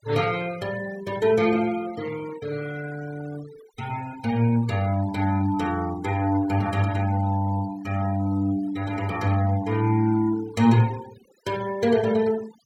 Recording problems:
denoising artefacts; signal-to-artefact ratio 19 dB

